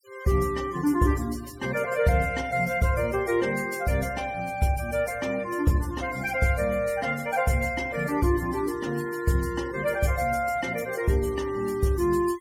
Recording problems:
noise reduction artefacts; signal-to-artefact ratio 21 dB

